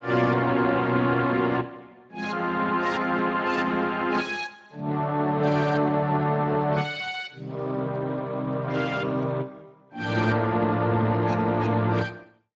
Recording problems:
codec artefacts; Speex, log-spectral distance 4 dB, nothing above 7.3 kHz

